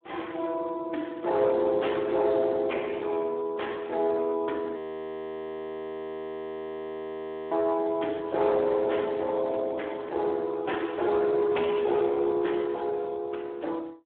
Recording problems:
phone line; 260 Hz to 2.7 kHz, Speex
distortion; hard clipping, uneven, signal-to-distortion ratio 12 dB
audio freezing; at 5 s for 2.5 s

